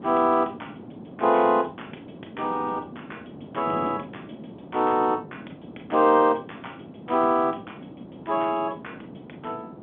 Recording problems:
phone line; 220 Hz to 3.5 kHz, G.711
wind noise; below 420 Hz, SNR 17 dB

